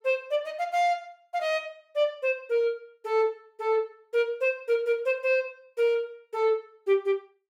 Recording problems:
none

